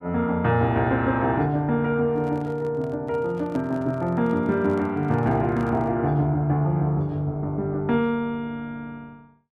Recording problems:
microphone handling noise; from 2 to 6 s; peak -12 dB vs average level

